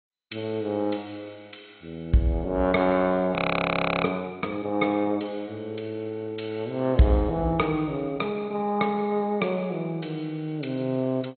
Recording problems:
lossy codec; MP2, log-spectral distance 3 dB, nothing above 4.1 kHz
audio freezing; at 3.5 s for 0.5 s

